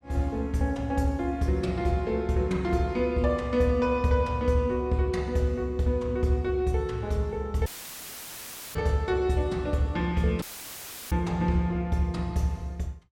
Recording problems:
dropout; at 7.5 s for 1 s and at 10 s for 0.5 s; filled with static

